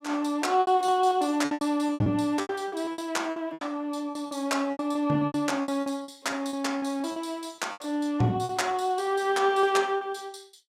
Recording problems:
lost packets; 15% of the sound replaced, filled with repeated pitch periods

